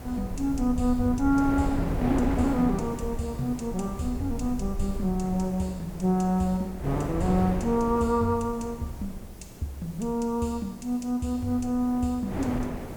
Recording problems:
background hiss; slope 0 dB per octave, SNR 25 dB
low-frequency rumble; below 88 Hz, SNR 12 dB
wind noise; below 560 Hz, SNR 9 dB

